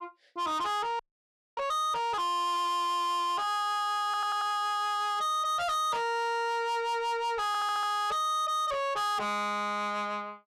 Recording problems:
distorted audio; soft clipping, signal-to-distortion ratio 8 dB
audio freezing; at 1 s for 0.5 s
stutter; at 4 s and at 7.5 s

